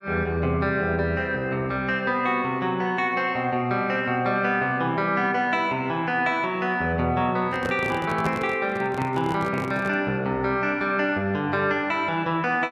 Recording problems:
microphone handling noise; from 7.5 to 10 s; peak -1 dB vs average level

